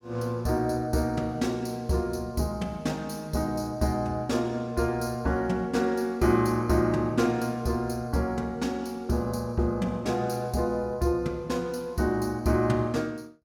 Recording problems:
none

